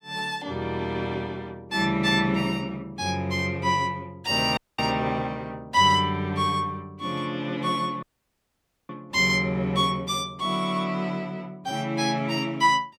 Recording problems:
audio cutting out; at 4.5 s and at 8 s for 1 s

